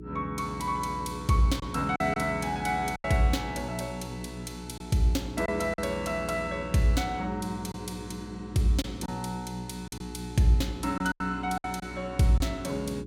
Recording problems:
hum; 60 Hz, harmonics up to 420 Hz, SNR 11 dB
lost packets; 4% of the sound replaced, filled with silence

